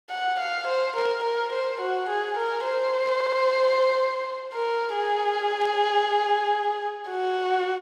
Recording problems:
static burst; at 1 s, at 3 s and at 5.5 s; peak -13 dB vs average level
stutter; at 3 s

